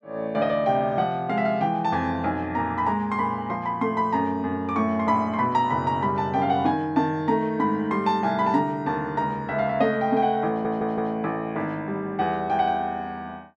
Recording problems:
audio stuttering; at 10 s

